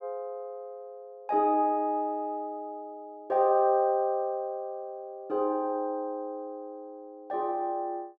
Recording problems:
none

